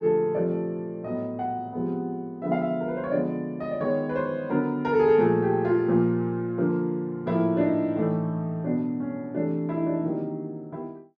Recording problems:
none

